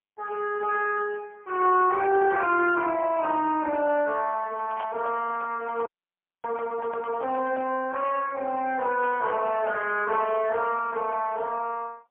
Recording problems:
phone line; 280 Hz to 3.3 kHz, AMR-NB, then MP3
microphone handling noise; from 4.5 to 8 s; peak -7 dB vs average level
audio freezing; at 6 s for 0.5 s

